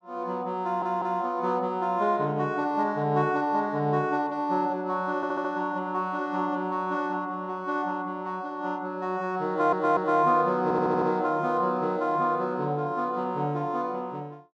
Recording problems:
stutter; 4 times, first at 0.5 s

